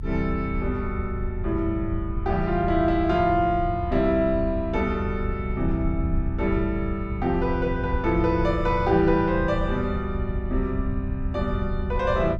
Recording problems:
low-frequency rumble; below 82 Hz, SNR 6 dB

